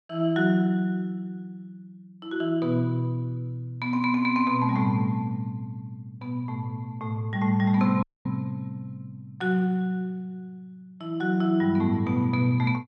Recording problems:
dropout; at 8 s

